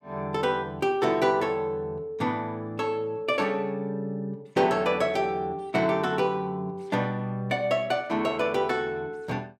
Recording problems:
none

